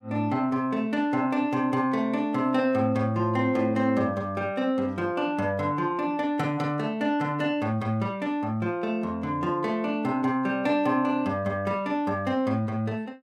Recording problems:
none

